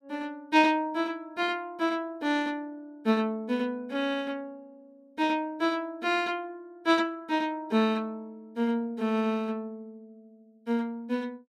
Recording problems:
none

